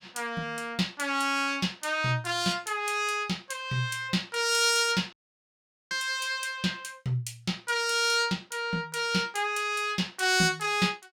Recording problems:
dropout; at 5 s for 1 s

